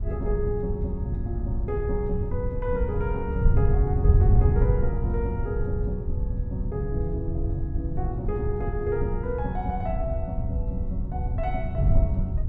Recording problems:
wind noise; below 96 Hz, SNR -4 dB

